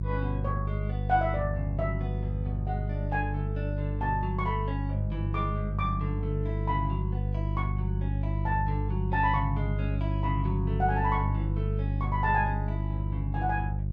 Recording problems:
hum; 50 Hz, harmonics up to 350 Hz, SNR -2 dB

